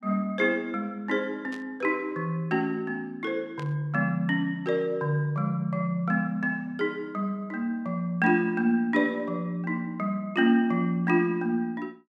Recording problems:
static burst; at 1.5 s and at 3.5 s; peak -13 dB vs average level

